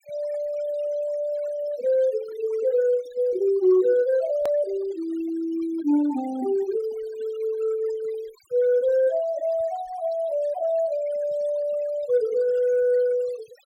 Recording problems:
denoising artefacts; signal-to-artefact ratio 22 dB
edit click; at 4.5 s

